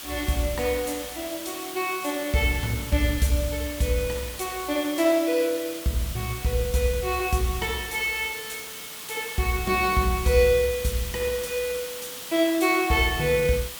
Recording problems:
background hiss; slope 0 dB per octave, SNR 10 dB

